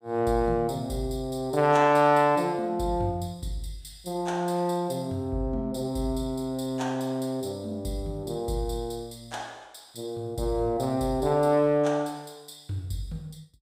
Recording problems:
none

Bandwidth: 15.5 kHz